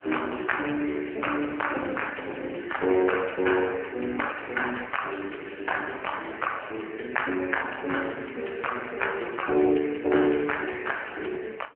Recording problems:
phone line; 260 Hz to 3 kHz, AMR-NB

